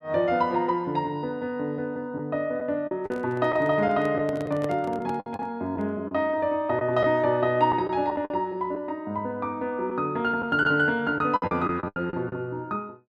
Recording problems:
packet loss; 6% of the sound replaced, filled with the last packet
handling noise; from 3 to 6 s; peak -5 dB vs average level

